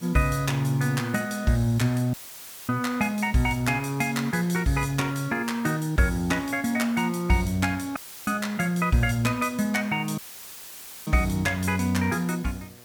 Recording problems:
hum; 60 Hz, harmonics up to 1.3 kHz, SNR 27 dB
hiss; slope -1 dB per octave, SNR 23 dB
audio cutting out; at 2 s for 0.5 s, at 8 s and at 10 s for 1 s; filled with static

